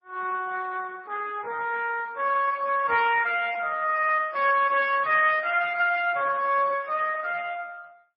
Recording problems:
lossy compression; Speex, then MP3, log-spectral distance 3 dB, nothing above 5.2 kHz

